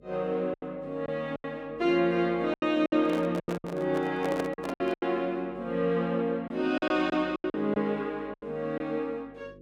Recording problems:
electrical hum; 50 Hz, harmonics up to 550 Hz, SNR 25 dB
lost packets; 10% of the sound replaced, filled with silence
microphone handling noise; from 3 to 5 s; peak 0 dB vs average level

